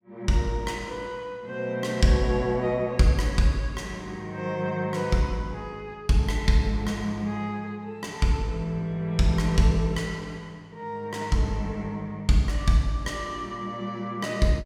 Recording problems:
none

